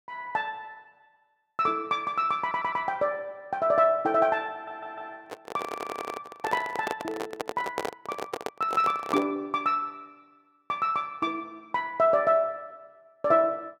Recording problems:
audio stuttering; at 2.5 s, at 4.5 s and at 5.5 s
microphone handling noise; from 5 to 9.5 s; peak +1 dB vs average level

